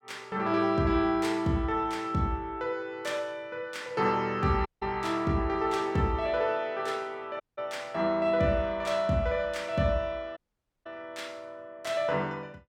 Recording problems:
audio cutting out; at 4.5 s, at 7.5 s and at 10 s

